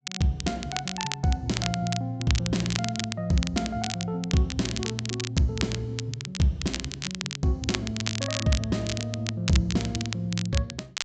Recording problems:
low-pass filter; nothing above 8 kHz
crackle; vinyl, SNR 6 dB

